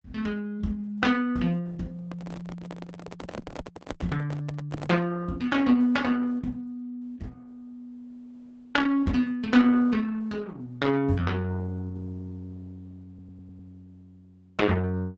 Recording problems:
codec artefacts; Opus, log-spectral distance 2 dB
microphone handling noise; from 2 to 5 s; peak -2 dB vs average level
audio stuttering; at 13 s

